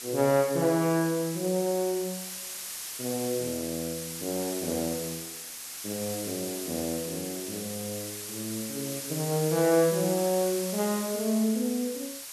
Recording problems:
hiss; slope +2 dB per octave, SNR 6 dB

